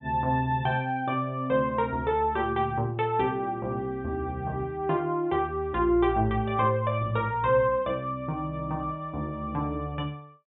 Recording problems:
treble cut off; nothing above 3.8 kHz

